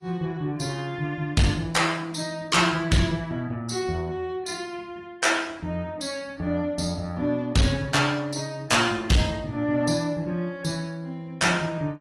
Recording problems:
codec artefacts; AAC, log-spectral distance 3 dB, nothing above 11 kHz
distorted audio; hard clipping, signal-to-distortion ratio 10 dB

